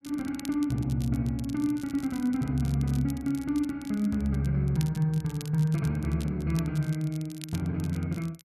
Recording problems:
crackling; vinyl, SNR 20 dB

